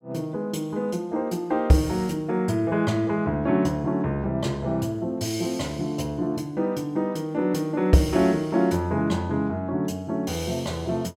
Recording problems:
none

